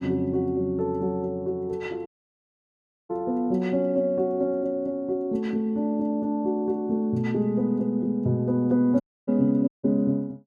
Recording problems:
audio cutting out; at 2 s for 1 s, at 9 s and at 9.5 s

